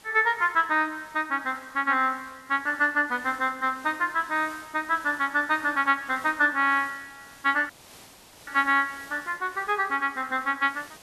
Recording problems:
hiss; slope -2 dB per octave, SNR 23 dB
audio cutting out; at 7.5 s for 1 s

